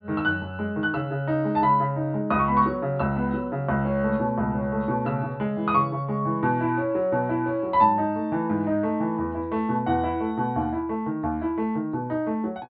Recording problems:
treble cut off; nothing above 4.7 kHz

